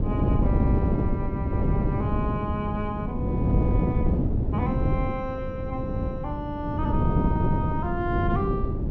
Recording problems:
low-pass filter; nothing above 6.9 kHz
wind on the microphone; below 230 Hz, SNR -6 dB

